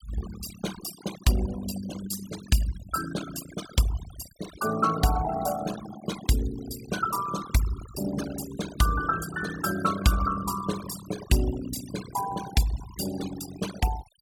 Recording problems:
noise reduction artefacts; signal-to-artefact ratio 10 dB

